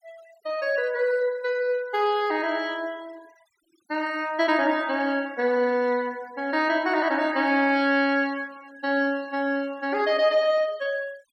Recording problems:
noise reduction artefacts; signal-to-artefact ratio 25 dB

